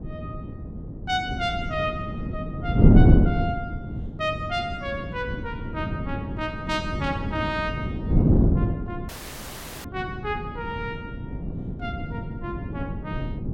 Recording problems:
wind noise; below 230 Hz, SNR -5 dB
dropout; at 9 s for 1 s

